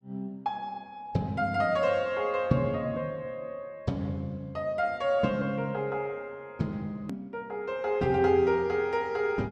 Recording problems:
click at an edit; at 7 s

